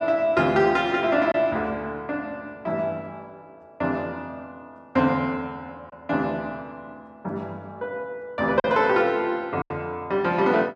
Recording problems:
packet loss; 1.6% of the sound replaced, filled with silence

